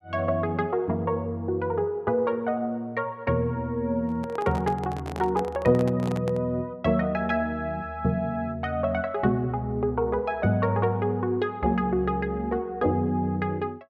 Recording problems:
handling noise; from 4 to 6.5 s; peak -4 dB vs average level

